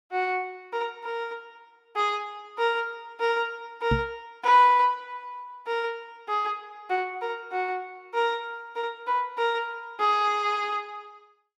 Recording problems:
knock on the microphone; at 4 s; peak +4 dB vs average level

